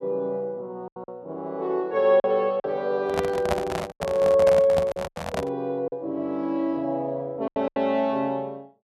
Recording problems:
lost packets; 7% of the sound replaced, filled with silence
handling noise; from 3 to 5.5 s; peak +3 dB vs average level

